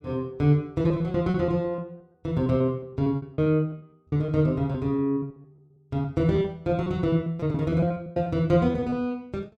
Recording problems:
packet loss; 12% of the sound replaced, filled with repeated pitch periods

